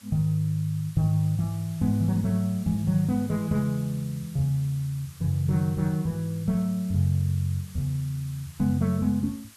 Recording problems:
background hiss; slope +1 dB per octave, SNR 22 dB

